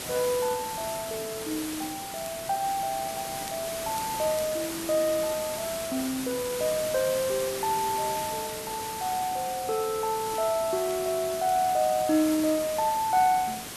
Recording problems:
background hiss; slope -2 dB per octave, SNR 7 dB
crackle; vinyl, SNR 27 dB

